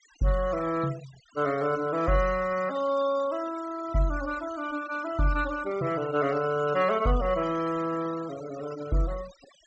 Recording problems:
treble cut off; nothing above 8 kHz
noise reduction artefacts; signal-to-artefact ratio 17 dB

